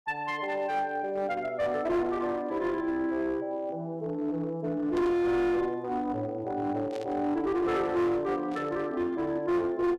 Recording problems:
distortion; hard clipping, uneven, signal-to-distortion ratio 10 dB
static burst; at 5 s, at 7 s and at 8.5 s; peak -12 dB vs average level

